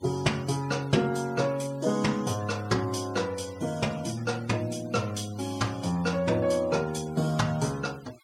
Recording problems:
denoising artefacts; signal-to-artefact ratio 20 dB

